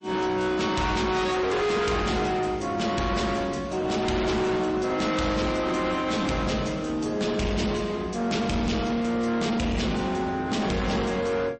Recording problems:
lossy compression; MP3, log-spectral distance 3 dB, nothing above 8.2 kHz
distorted audio; hard clipping, uneven, signal-to-distortion ratio 6 dB

